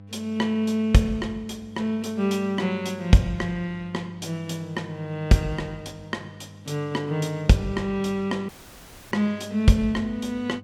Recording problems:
hum; 50 Hz, harmonics up to 800 Hz, SNR 20 dB
audio cutting out; at 8.5 s for 0.5 s

